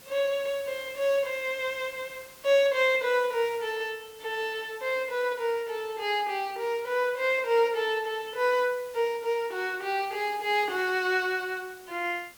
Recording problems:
hiss; slope -1 dB per octave, SNR 22 dB

